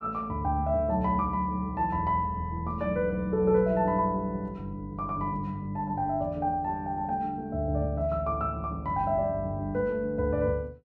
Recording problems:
none

